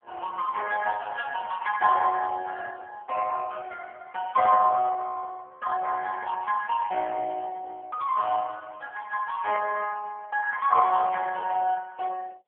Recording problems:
phone line; 320 Hz to 2.8 kHz, AMR-NB

